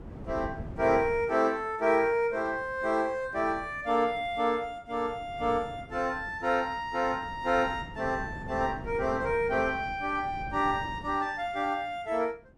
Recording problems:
wind on the microphone; below 290 Hz, SNR 16 dB

